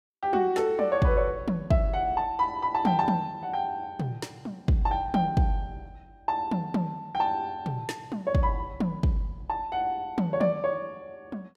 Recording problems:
none

